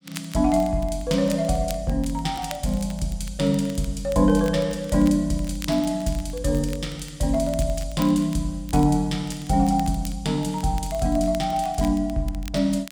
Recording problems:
crackling; vinyl, SNR 20 dB

